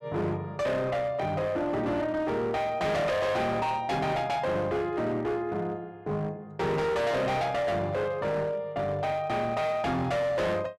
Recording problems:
distorted audio; hard clipping, signal-to-distortion ratio 7 dB

